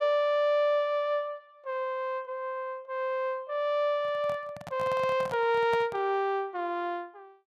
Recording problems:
microphone handling noise; from 4 to 6 s; peak -6 dB vs average level

